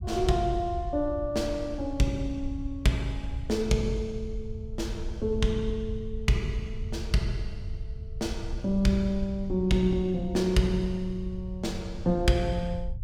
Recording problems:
rumble; below 86 Hz, SNR 9 dB

